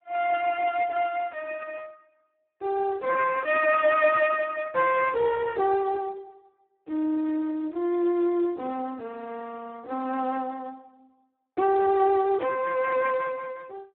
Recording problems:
phone line; 240 Hz to 2.5 kHz, Speex

